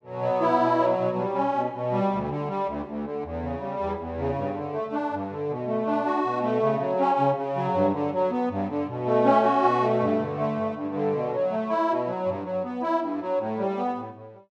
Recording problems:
none

